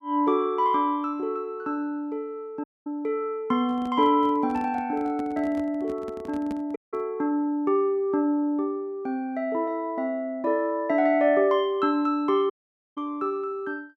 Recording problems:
audio cutting out; at 2.5 s, at 7 s and at 13 s
handling noise; from 3.5 to 7 s; peak -7 dB vs average level

